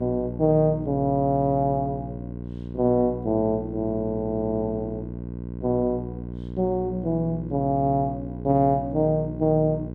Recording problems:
hum; 60 Hz, harmonics up to 600 Hz, SNR 10 dB

